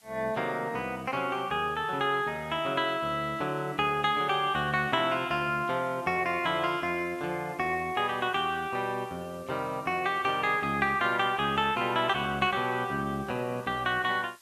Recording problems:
background hiss; SNR 27 dB

